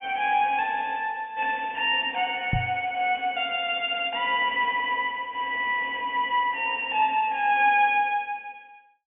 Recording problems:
low-pass filter; nothing above 3.3 kHz
microphone thump; at 2.5 s; peak +1 dB vs average level

